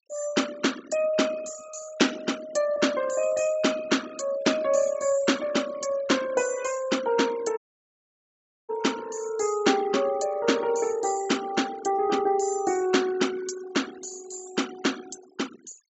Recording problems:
low-pass filter; nothing above 7.7 kHz
noise reduction artefacts; signal-to-artefact ratio 17 dB
dropout; at 7.5 s for 1 s

